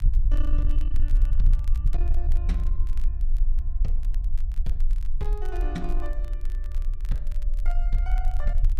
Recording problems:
distortion; soft clipping, signal-to-distortion ratio 11 dB
low-frequency rumble; below 40 Hz, strongest tone 18 Hz, SNR -11 dB
crackle; vinyl, SNR 18 dB

